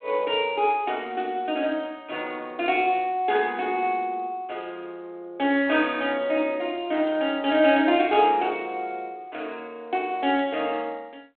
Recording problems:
telephone audio; 220 Hz to 3.4 kHz, G.726

